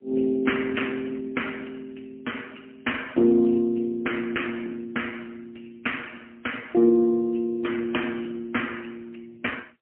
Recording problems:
phone line; 190 Hz to 3.1 kHz, AMR-NB, then MP3

